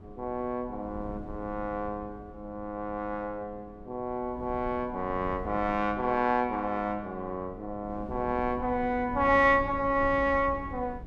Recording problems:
wind on the microphone; below 220 Hz, SNR 15 dB

